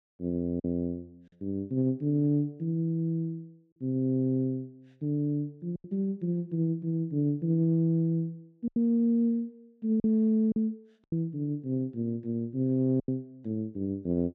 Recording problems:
packet loss; 4% of the sound replaced, filled with silence

